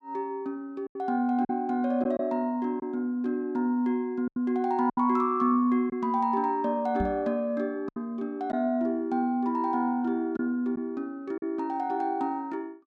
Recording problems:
packet loss; 4% of the sound replaced, filled with silence
microphone bump; at 7 s; peak 0 dB vs average level

